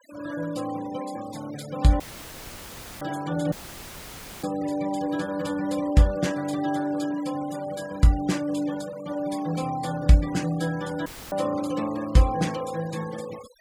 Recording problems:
noise reduction artefacts; signal-to-artefact ratio 18 dB
dropout; at 2 s for 1 s, at 3.5 s for 1 s and at 11 s; filled with static

